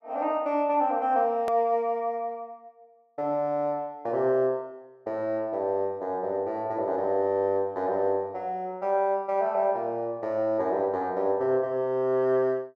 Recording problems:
click at an edit; at 1.5 s

